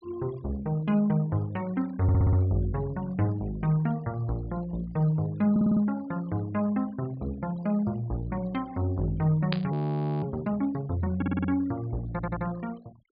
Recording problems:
treble cut off; nothing above 4.9 kHz
noise reduction artefacts; signal-to-artefact ratio 24 dB
audio stuttering; 4 times, first at 2 s
burst of static; at 9.5 s; peak 0 dB vs average level
audio freezing; at 9.5 s for 0.5 s

